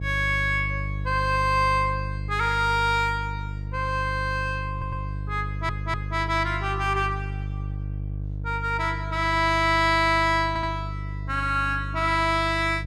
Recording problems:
hum; 50 Hz, harmonics up to 450 Hz, SNR 8 dB
audio stuttering; at 4.5 s, at 5.5 s and at 10 s

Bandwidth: 14.5 kHz